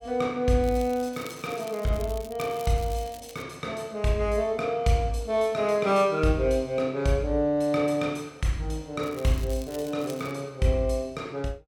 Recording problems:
crackle; from 0.5 to 3.5 s and from 9 to 10 s; loose cable, SNR 20 dB

